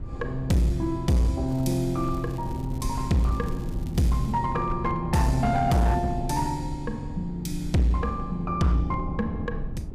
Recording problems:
distorted audio; hard clipping, uneven, signal-to-distortion ratio 11 dB
low-frequency rumble; below 88 Hz, SNR 12 dB
wind noise; below 170 Hz, SNR 12 dB
crackling; from 1.5 to 2.5 s and from 2.5 to 4.5 s; loose cable, SNR 27 dB

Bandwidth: 15 kHz